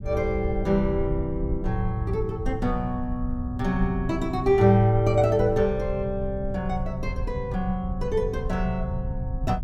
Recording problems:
low-frequency rumble; below 90 Hz, SNR 8 dB

